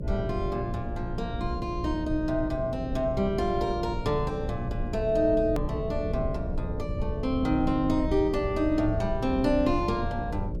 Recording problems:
hum; 60 Hz, harmonics up to 600 Hz, SNR 10 dB
low-frequency rumble; below 110 Hz, SNR 8 dB
hard cut with a click; at 5.5 s

